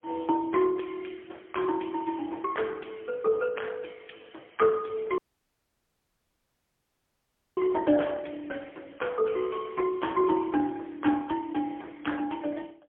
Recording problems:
telephone audio; 190 Hz to 3.3 kHz, AMR-NB, then MP3
audio cutting out; at 5 s for 2.5 s

